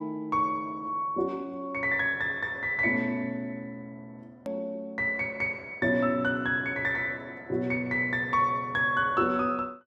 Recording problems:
edit click; at 4.5 s

